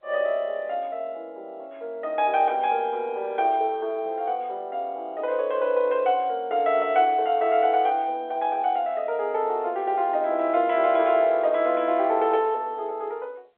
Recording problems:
telephone audio; 340 Hz to 3.6 kHz, G.711

